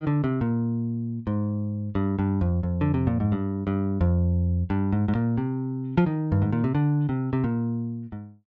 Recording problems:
none

